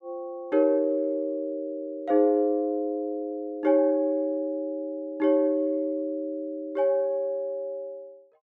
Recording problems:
none

